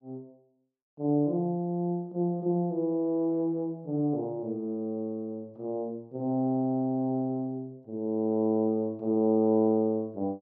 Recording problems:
none

